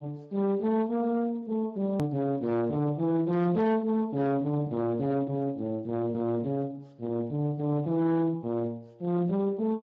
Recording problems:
codec artefacts; Speex, log-spectral distance 2 dB, nothing above 13.1 kHz
distortion; soft clipping, signal-to-distortion ratio 11 dB
hard cut with a click; at 2 s

